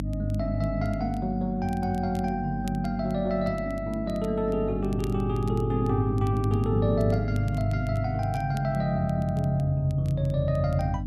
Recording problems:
hum; 50 Hz, harmonics up to 300 Hz, SNR 7 dB
crackling; vinyl, SNR 27 dB

